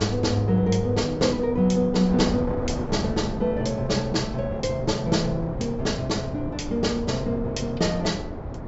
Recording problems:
low-pass filter; nothing above 8 kHz
wind noise; below 490 Hz, SNR 8 dB

